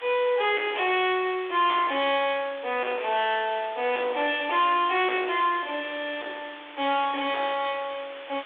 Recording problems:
phone line; 300 Hz to 3.6 kHz, G.726
distortion; soft clipping, signal-to-distortion ratio 12 dB
hiss; SNR 17 dB

